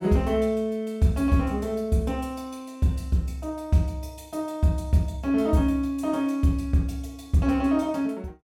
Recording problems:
none

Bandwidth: 16.5 kHz